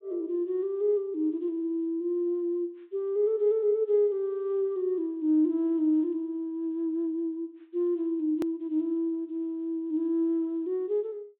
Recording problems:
treble missing; nothing above 4 kHz
click at an edit; at 8.5 s

